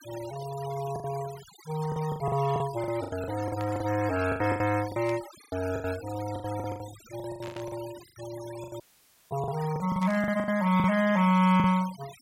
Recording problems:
noise reduction artefacts; signal-to-artefact ratio 16 dB
lost packets; 16% of the sound replaced, filled with the last packet
burst of static; 4 times, first at 3.5 s; peak -12 dB vs average level
audio cutting out; at 9 s for 0.5 s

